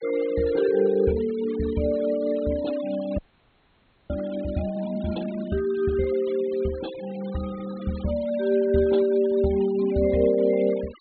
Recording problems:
low-pass filter; nothing above 4.3 kHz
denoising artefacts; signal-to-artefact ratio 21 dB
audio freezing; at 3 s for 1 s

